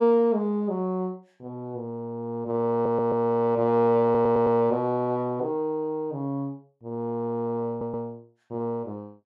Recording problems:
stutter; at 2.5 s, at 4 s and at 7.5 s

